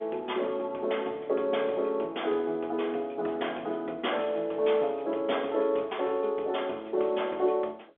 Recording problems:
phone line; 280 Hz to 3.5 kHz, G.711

